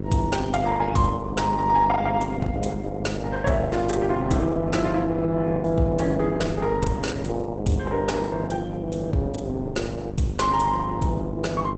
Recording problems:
codec artefacts; Opus, log-spectral distance 3 dB, nothing above 8.2 kHz
hum; 50 Hz, harmonics up to 600 Hz, SNR 7 dB
wind on the microphone; below 310 Hz, SNR 17 dB
packet loss; 11% of the sound replaced, filled with the last packet

